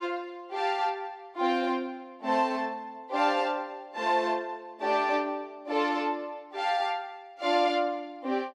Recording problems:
none

